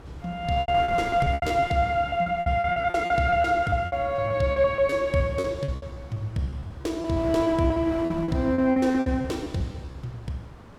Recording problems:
wind on the microphone; below 910 Hz, SNR 18 dB
packet loss; 17% of the sound replaced, filled with repeated pitch periods

